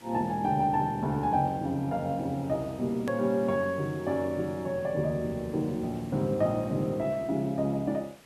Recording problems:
hiss; slope -3 dB per octave, SNR 24 dB
edit click; at 3 s

